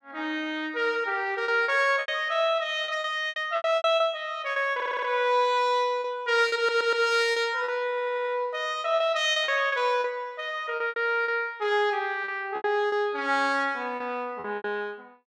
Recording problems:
packet loss; 11% of the sound replaced, filled with repeated pitch periods
stutter; at 5 s, at 6.5 s and at 8 s

